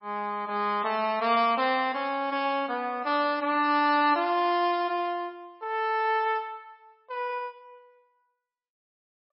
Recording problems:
codec artefacts; MP3, log-spectral distance 2 dB, nothing above 4.9 kHz

